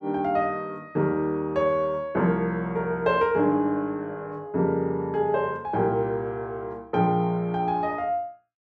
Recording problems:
none

